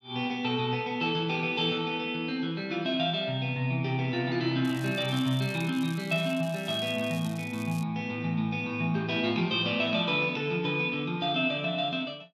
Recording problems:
crackle; from 4.5 to 8 s; loose cable, SNR 19 dB

